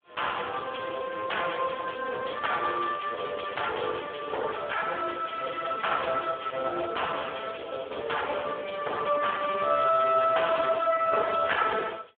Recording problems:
telephone audio; 340 Hz to 3.3 kHz, Speex

